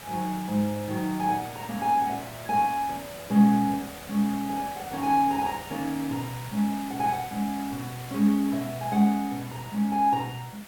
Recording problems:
hiss; slope -3 dB per octave, SNR 15 dB

